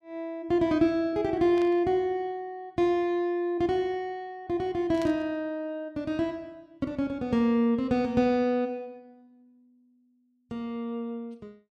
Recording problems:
burst of static; at 1.5 s and at 5 s; peak -11 dB vs average level

